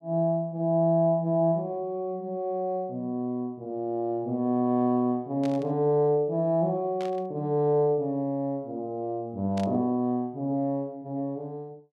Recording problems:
burst of static; at 5.5 s, at 7 s and at 9.5 s; peak -12 dB vs average level

